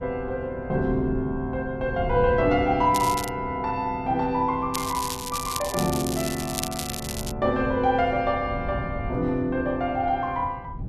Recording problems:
wind noise; below 160 Hz, SNR 11 dB
crackling; at 3 s and from 4.5 to 7.5 s; loose cable, SNR 7 dB

